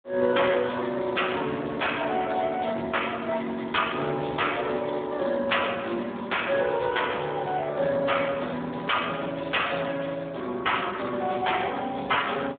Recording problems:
phone line; 190 Hz to 3.5 kHz, Speex

